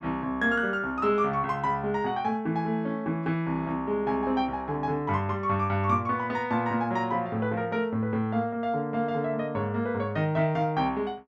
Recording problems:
none

